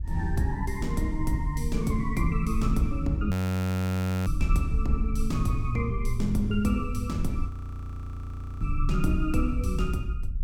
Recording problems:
wind noise; below 70 Hz, SNR 3 dB
frozen audio; at 3.5 s for 1 s and at 7.5 s for 1 s

